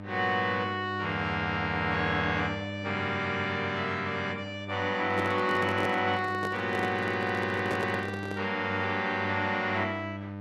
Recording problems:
hum; 50 Hz, harmonics up to 1.6 kHz, SNR 10 dB
handling noise; from 5 to 8.5 s; peak -2 dB vs average level

